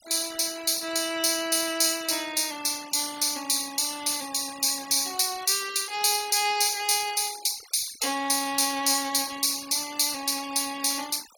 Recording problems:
denoising artefacts; signal-to-artefact ratio 17 dB

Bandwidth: 17.5 kHz